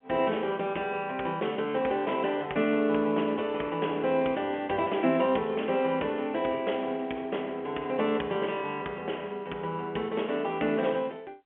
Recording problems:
phone line; 260 Hz to 3.3 kHz, G.711

